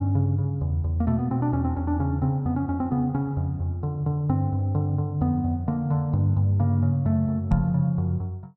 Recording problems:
knock on the microphone; at 7.5 s; peak +1 dB vs average level

